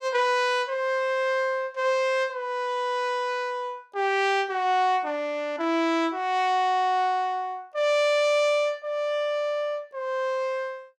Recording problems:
none

